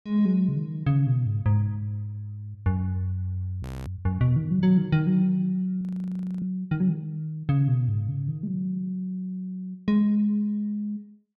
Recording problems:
frozen audio; at 3.5 s and at 6 s for 0.5 s

